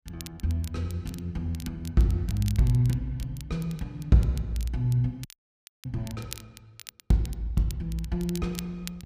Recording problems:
crackling; vinyl, SNR 18 dB
audio freezing; at 5.5 s for 0.5 s

